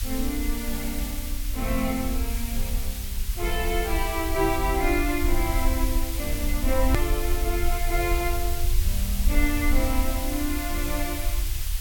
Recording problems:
background hiss; slope +3 dB per octave, SNR 5 dB
rumble; below 56 Hz, SNR 1 dB
hard cut with a click; at 7 s

